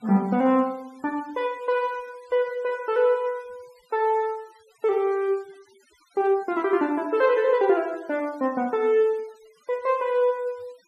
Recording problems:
noise reduction artefacts; signal-to-artefact ratio 28 dB

